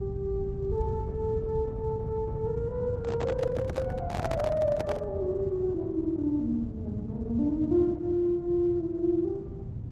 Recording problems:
lossy codec; Opus, log-spectral distance 2 dB
low-frequency rumble; below 130 Hz, SNR 5 dB
handling noise; from 3 to 5 s; peak -1 dB vs average level

